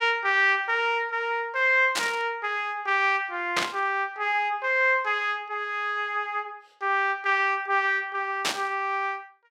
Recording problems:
static burst; at 2 s, at 3.5 s and at 8.5 s; peak +4 dB vs average level

